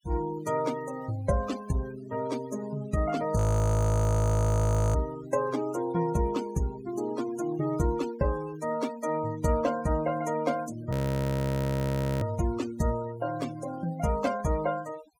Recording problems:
denoising artefacts; signal-to-artefact ratio 16 dB
frozen audio; at 3.5 s for 1.5 s and at 11 s for 1.5 s

